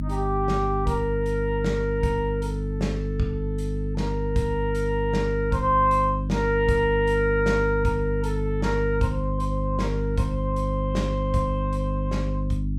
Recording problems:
hum; 50 Hz, harmonics up to 300 Hz, SNR 2 dB

